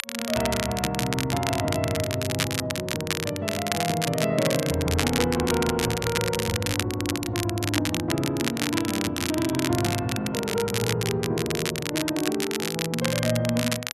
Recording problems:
crackle; vinyl, SNR 3 dB

